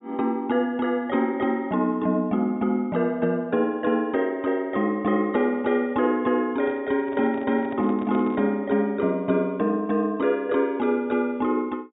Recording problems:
low-pass filter; nothing above 4 kHz
microphone handling noise; from 6.5 to 8.5 s; peak -9 dB vs average level

